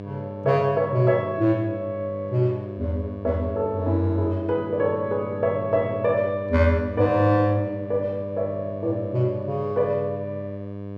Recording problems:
hum; 50 Hz, harmonics up to 1.1 kHz, SNR 11 dB

